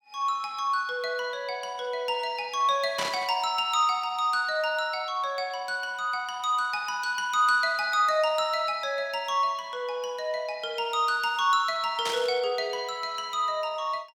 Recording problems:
burst of static; at 3 s and at 12 s; peak 0 dB vs average level

